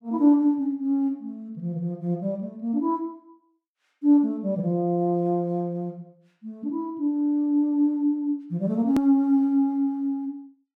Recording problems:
click at an edit; at 9 s

